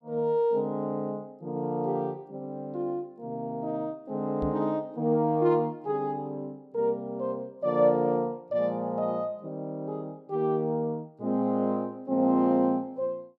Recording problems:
knock on the microphone; at 4.5 s; peak 0 dB vs average level

